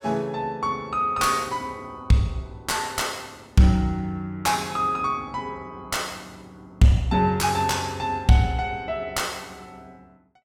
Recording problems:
distortion; soft clipping, signal-to-distortion ratio 12 dB

